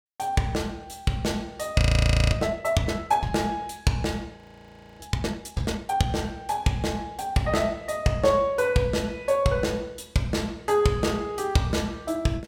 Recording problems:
audio freezing; at 2 s for 0.5 s and at 4.5 s for 0.5 s

